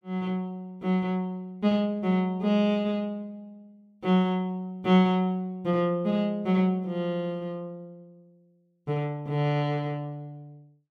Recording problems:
none

